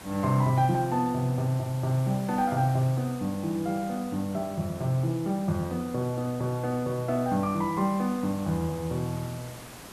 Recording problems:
background hiss; slope -4 dB per octave, SNR 17 dB

